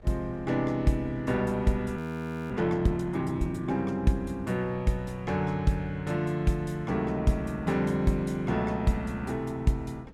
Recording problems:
wind on the microphone; below 280 Hz, SNR 21 dB
frozen audio; at 2 s for 0.5 s

